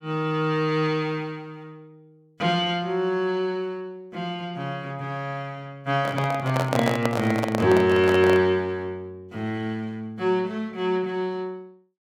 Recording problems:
handling noise; from 6 to 8.5 s; peak +4 dB vs average level

